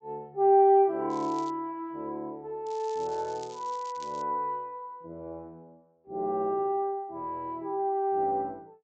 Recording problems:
low-pass filter; nothing above 8 kHz
crackle; at 1 s and from 2.5 to 4 s; loose cable, SNR 23 dB

